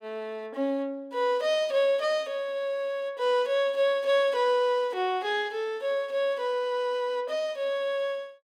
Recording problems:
none

